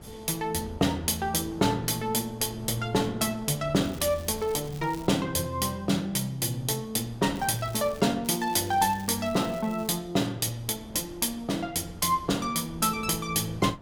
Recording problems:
wind noise; below 370 Hz, SNR 19 dB
crackling; from 4 to 5 s, at 7.5 s and from 8 to 10 s; loose cable, SNR 21 dB

